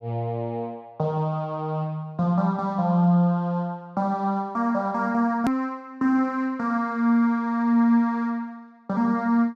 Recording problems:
edit click; at 5.5 s

